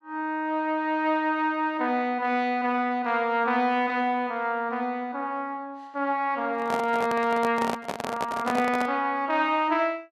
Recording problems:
handling noise; from 6.5 to 9 s; peak 0 dB vs average level

